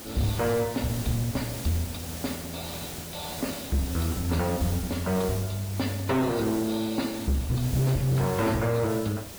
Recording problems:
codec artefacts; MP3, log-spectral distance 5 dB
distortion; hard clipping, uneven, signal-to-distortion ratio 8 dB
hiss; SNR 9 dB

